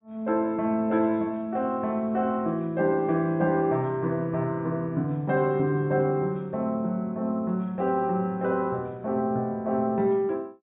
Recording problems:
treble cut off; nothing above 4 kHz

